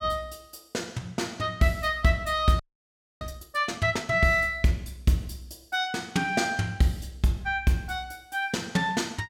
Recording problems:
frozen audio; at 2.5 s for 0.5 s

